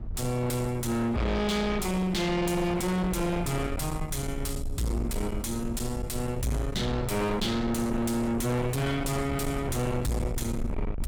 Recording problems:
distortion; soft clipping, signal-to-distortion ratio 5 dB
low-frequency rumble; below 210 Hz, SNR 7 dB

